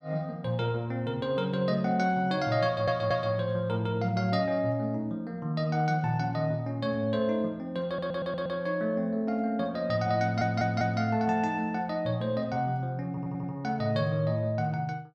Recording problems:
stutter; 4 times, first at 2.5 s

